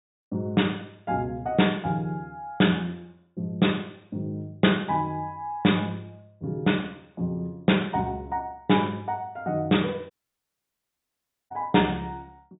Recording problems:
low-pass filter; nothing above 4 kHz
dropout; at 10 s for 1.5 s

